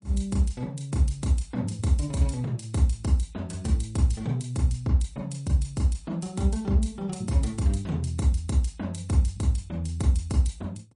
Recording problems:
lossy codec; MP3, log-spectral distance 2 dB, nothing above 10.4 kHz

